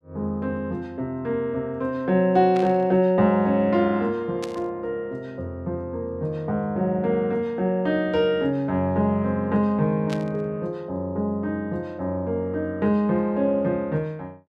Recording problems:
burst of static; at 2.5 s, at 4.5 s and at 10 s; peak -8 dB vs average level

